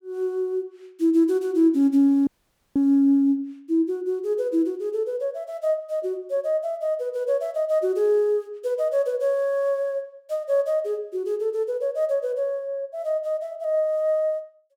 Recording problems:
audio cutting out; at 2.5 s

